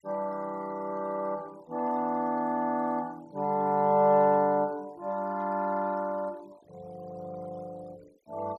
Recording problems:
denoising artefacts; signal-to-artefact ratio 27 dB

